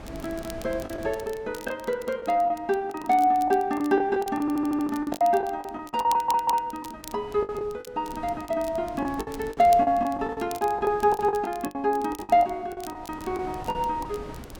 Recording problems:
wind noise; below 670 Hz, SNR 20 dB
crackling; vinyl, SNR 21 dB
lost packets; 13% of the sound replaced, filled with the last packet
stutter; at 4.5 s and at 6 s

